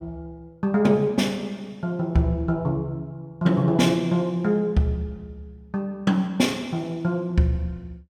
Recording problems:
none

